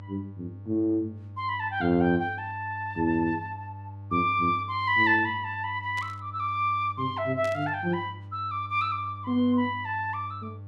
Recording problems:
hum; 50 Hz, harmonics up to 600 Hz, SNR 15 dB
static burst; at 6 s and at 7.5 s; peak -11 dB vs average level

